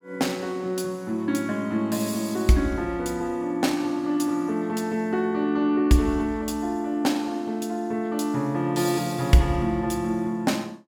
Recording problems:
none

